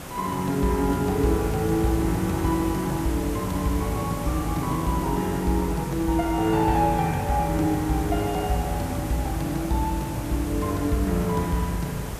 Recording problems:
background hiss; slope -5 dB per octave, SNR 11 dB

